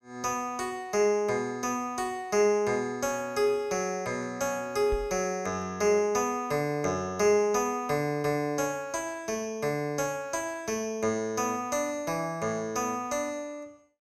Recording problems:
microphone bump; at 5 s; peak -3 dB vs average level

